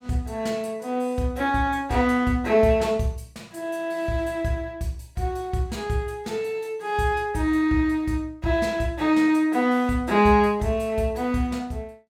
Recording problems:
none

